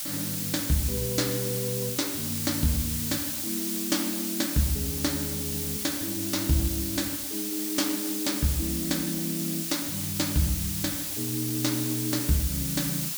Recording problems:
hiss; slope +3 dB per octave, SNR 0 dB

